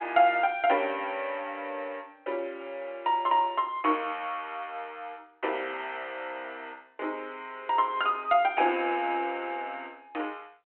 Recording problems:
telephone audio; 280 Hz to 3.2 kHz, G.726

